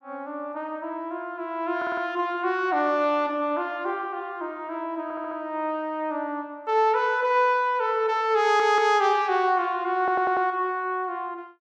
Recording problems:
audio stuttering; 4 times, first at 2 s

